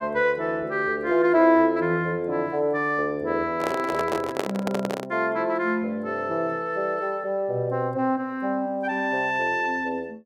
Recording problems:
handling noise; from 3.5 to 5 s; peak +2 dB vs average level

